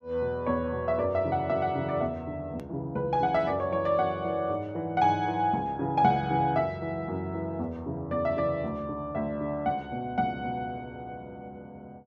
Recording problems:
hard cut with a click; at 2.5 s

